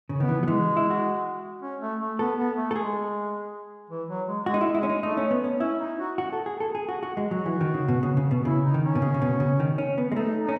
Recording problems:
none

